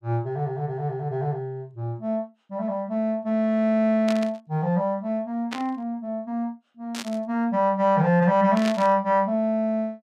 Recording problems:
burst of static; 4 times, first at 4 s; peak -4 dB vs average level

